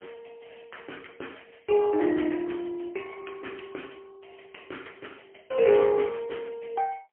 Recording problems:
phone line; 240 Hz to 3.2 kHz, AMR-NB, then MP3

